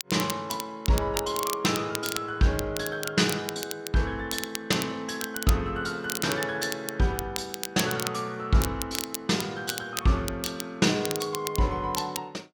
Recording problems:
crackling; vinyl, SNR 7 dB

